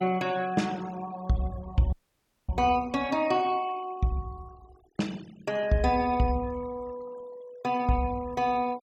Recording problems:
denoising artefacts; signal-to-artefact ratio 22 dB
audio cutting out; at 2 s for 0.5 s

